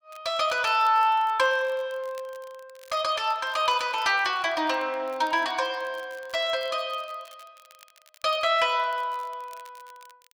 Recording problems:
crackling; vinyl, SNR 28 dB

